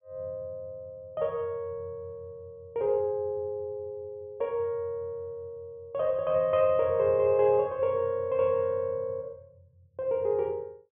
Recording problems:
treble cut off; nothing above 3.5 kHz

